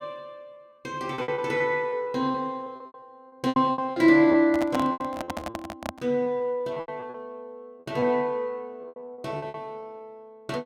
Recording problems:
packet loss; 14% of the sound replaced, filled with repeated pitch periods
handling noise; from 4.5 to 6 s; peak -1 dB vs average level

